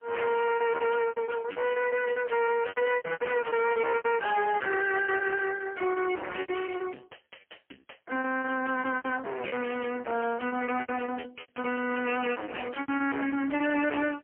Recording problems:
telephone audio; 220 Hz to 3 kHz, AMR-NB, then MP3
distortion; soft clipping, signal-to-distortion ratio 5 dB
lost packets; 16% of the sound replaced, filled with repeated pitch periods

